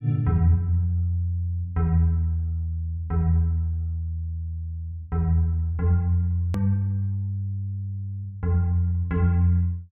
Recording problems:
click at an edit; at 6.5 s

